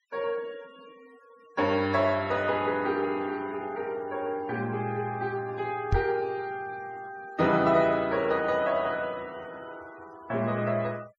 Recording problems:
denoising artefacts; signal-to-artefact ratio 24 dB
microphone bump; at 6 s; peak +5 dB vs average level

